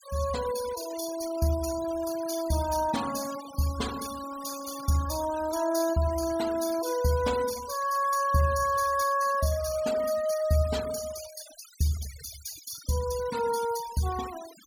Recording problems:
denoising artefacts; signal-to-artefact ratio 13 dB

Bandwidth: 17 kHz